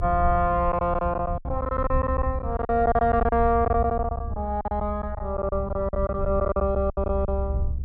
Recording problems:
rumble; below 78 Hz, SNR 6 dB
packet loss; 15% of the sound replaced, filled with silence

